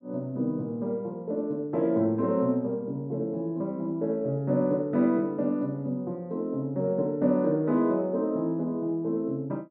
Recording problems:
none

